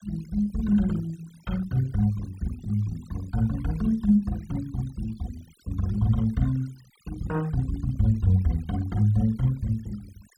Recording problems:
noise reduction artefacts; signal-to-artefact ratio 24 dB

